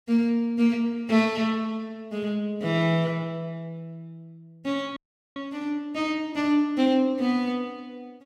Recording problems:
audio freezing; at 5 s

